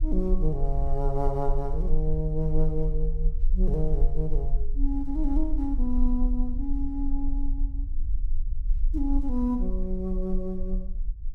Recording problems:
rumble; below 38 Hz, strongest tone 18 Hz, SNR 0 dB

